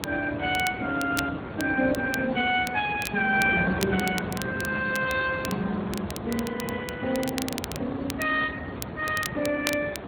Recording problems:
lossy codec; AAC, then Speex, log-spectral distance 4 dB
wind on the microphone; below 760 Hz, SNR 8 dB
crackle; vinyl, SNR 12 dB

